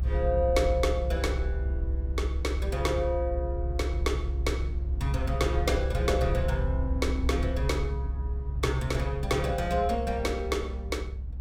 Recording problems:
rumble; below 68 Hz, strongest tone 66 Hz, SNR 1 dB

